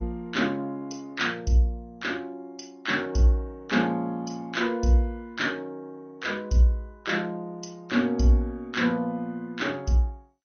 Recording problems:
codec artefacts; MP3, then MP2, log-spectral distance 2 dB, nothing above 6.3 kHz

